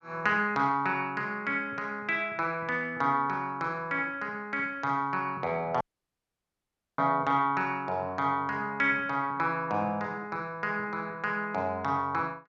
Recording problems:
dropout; at 6 s for 1 s

